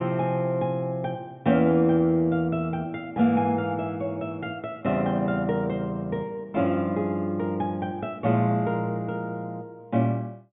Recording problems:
treble cut off; nothing above 3.5 kHz

